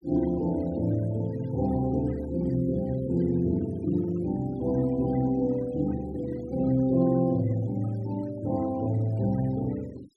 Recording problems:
noise reduction artefacts; signal-to-artefact ratio 24 dB

